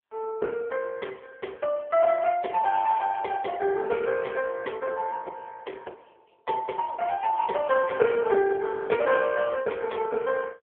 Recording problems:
telephone audio; 300 Hz to 2 kHz, AMR-NB

